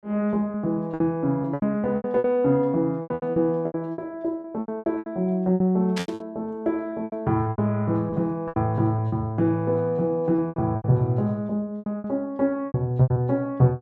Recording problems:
packet loss; 15% of the sound replaced, filled with repeated pitch periods
burst of static; at 6 s; peak -3 dB vs average level

